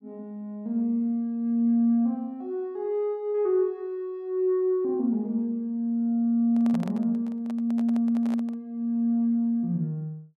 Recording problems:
microphone handling noise; from 6.5 to 8.5 s; peak -9 dB vs average level

